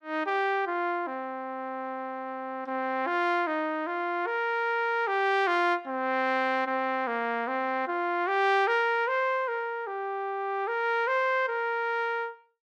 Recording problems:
none

